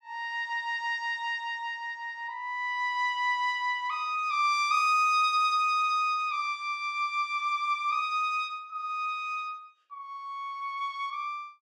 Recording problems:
none

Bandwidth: 14.5 kHz